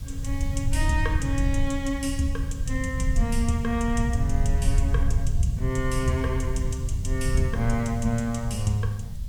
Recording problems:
hiss; SNR 23 dB
rumble; below 94 Hz, SNR 0 dB

